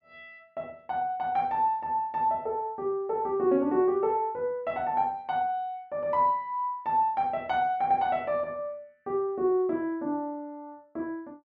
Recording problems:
none

